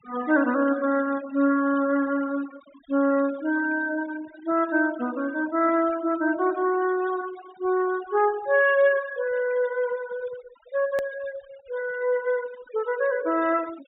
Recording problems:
low-pass filter; nothing above 4 kHz
denoising artefacts; signal-to-artefact ratio 19 dB
click at an edit; at 11 s

